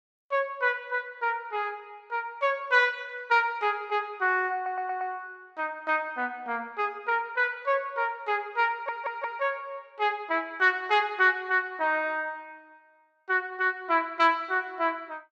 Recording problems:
stutter; at 4.5 s and at 8.5 s

